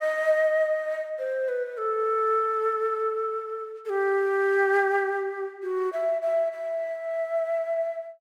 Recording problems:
none

